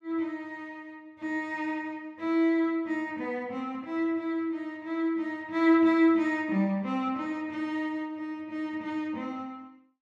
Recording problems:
none

